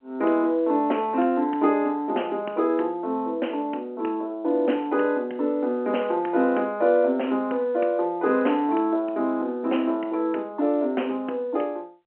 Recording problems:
telephone audio; 240 Hz to 3.1 kHz, G.711

